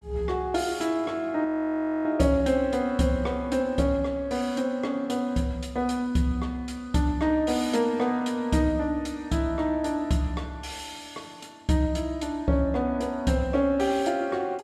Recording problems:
frozen audio; at 1.5 s for 0.5 s

